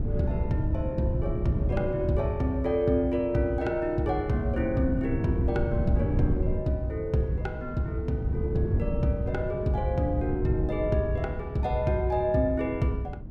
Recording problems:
wind on the microphone; below 170 Hz, SNR 5 dB

